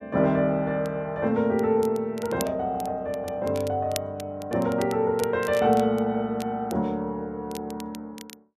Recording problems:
crackling; vinyl, SNR 17 dB

